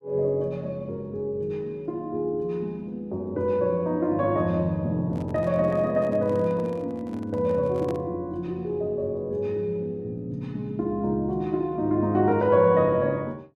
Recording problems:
handling noise; from 5 to 8 s; peak -10 dB vs average level

